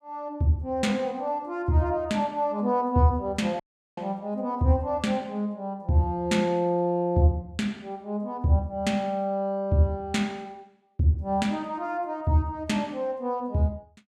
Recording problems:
dropout; at 3.5 s

